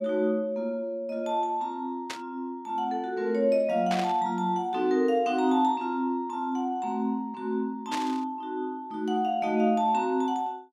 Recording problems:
static burst; at 2 s, at 4 s and at 8 s; peak -2 dB vs average level

